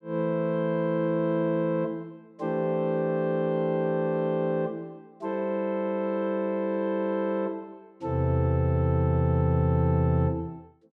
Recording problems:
none

